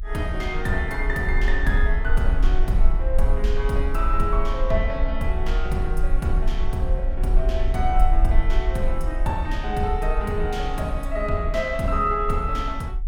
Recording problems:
rumble; below 44 Hz, SNR 1 dB

